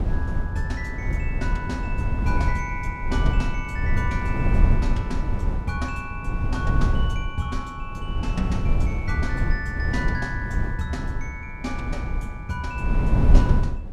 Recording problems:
wind noise; below 100 Hz, SNR -5 dB

